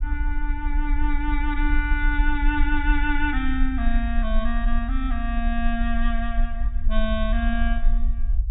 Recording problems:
treble cut off; nothing above 4 kHz
rumble; below 44 Hz, strongest tone 22 Hz, SNR -1 dB

